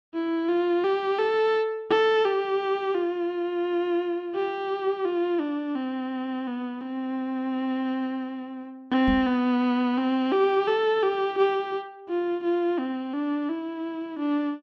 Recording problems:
microphone bump; at 9 s; peak 0 dB vs average level

